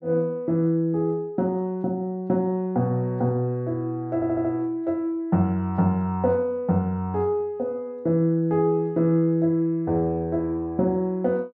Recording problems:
audio stuttering; at 4 s

